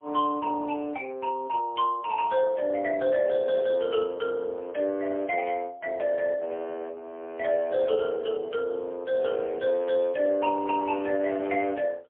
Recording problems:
telephone audio; 260 Hz to 2.6 kHz, AMR-NB, then MP3

